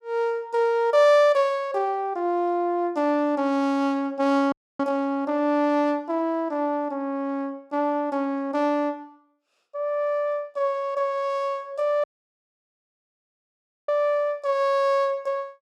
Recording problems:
dropout; at 4.5 s and at 12 s for 2 s

